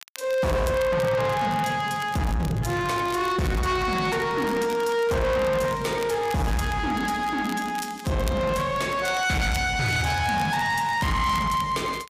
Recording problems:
distortion; soft clipping, signal-to-distortion ratio 7 dB
crackle; vinyl, SNR 19 dB

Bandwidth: 15 kHz